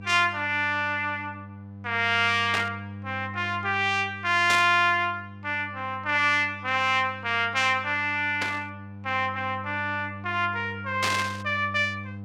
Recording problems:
hum; 50 Hz, harmonics up to 1 kHz, SNR 16 dB
static burst; 4 times, first at 2.5 s; peak +1 dB vs average level

